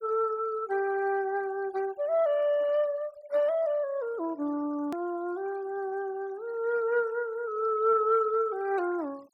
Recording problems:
denoising artefacts; signal-to-artefact ratio 27 dB
click at an edit; at 5 s

